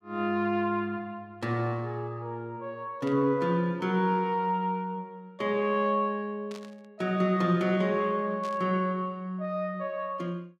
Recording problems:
static burst; at 3 s, at 6.5 s and at 8.5 s; peak -12 dB vs average level

